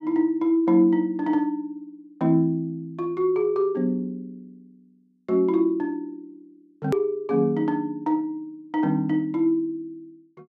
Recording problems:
hard cut with a click; at 7 s

